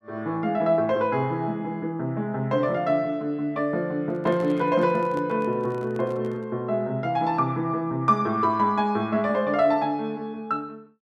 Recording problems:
microphone handling noise; from 4 to 6.5 s; peak -9 dB vs average level

